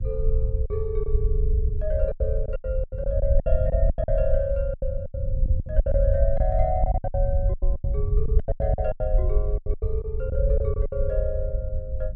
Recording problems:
low-frequency rumble; below 68 Hz, SNR -3 dB
lost packets; 15% of the sound replaced, filled with silence

